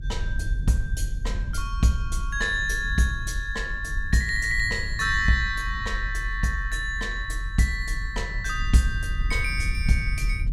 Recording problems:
rumble; below 64 Hz, strongest tone 40 Hz, SNR 5 dB

